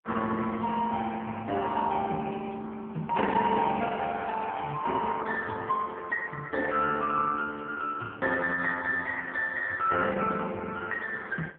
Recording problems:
phone line; 260 Hz to 3.5 kHz, AMR-NB

